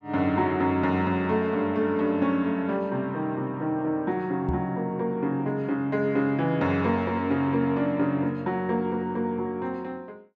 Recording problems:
microphone bump; at 4.5 s; peak -1 dB vs average level

